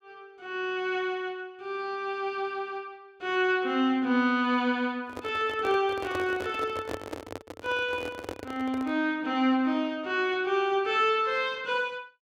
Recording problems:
microphone handling noise; from 5 to 9 s; peak -3 dB vs average level

